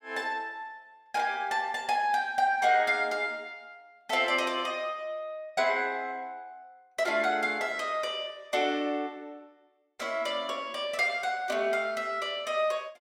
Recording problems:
none

